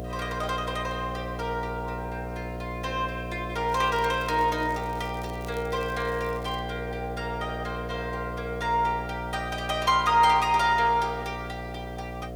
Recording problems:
mains hum; 60 Hz, harmonics up to 720 Hz, SNR 8 dB
hiss; SNR 28 dB
crackling; from 3.5 to 6.5 s; loose cable, SNR 24 dB

